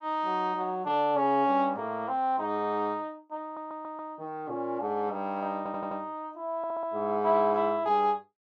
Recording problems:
stutter; at 3.5 s, at 5.5 s and at 6.5 s

